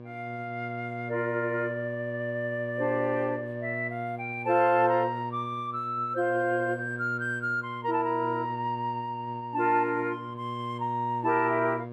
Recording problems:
hum; 60 Hz, harmonics up to 1.2 kHz, SNR 10 dB

